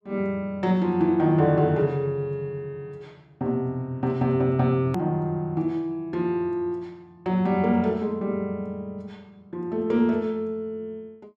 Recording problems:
click at an edit; at 5 s

